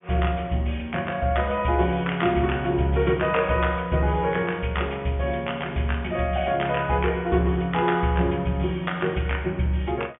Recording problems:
treble missing; nothing above 3.4 kHz

